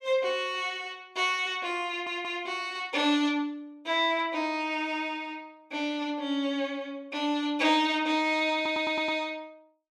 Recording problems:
stutter; at 2 s and at 8.5 s

